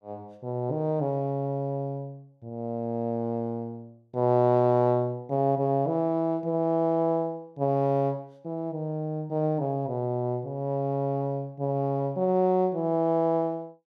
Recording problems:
none

